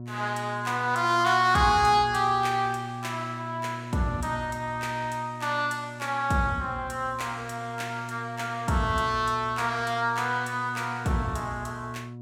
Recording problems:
hum; 60 Hz, harmonics up to 720 Hz, SNR 13 dB

